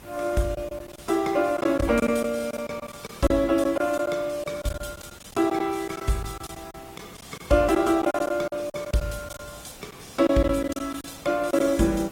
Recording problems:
lossy codec; Opus, log-spectral distance 5 dB, nothing above 16.5 kHz
hiss; slope -4 dB per octave, SNR 21 dB
lost packets; 10% of the sound replaced, filled with silence

